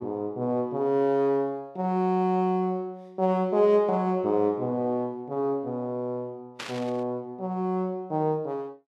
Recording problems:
burst of static; at 6.5 s; peak -5 dB vs average level

